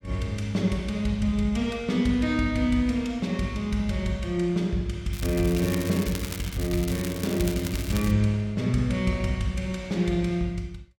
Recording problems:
crackle; from 5 to 8 s; loose cable, SNR 11 dB

